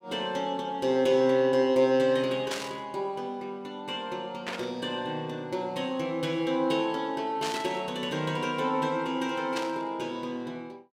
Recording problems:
burst of static; 4 times, first at 2.5 s; peak -1 dB vs average level

